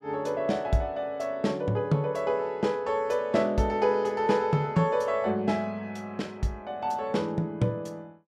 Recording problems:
none

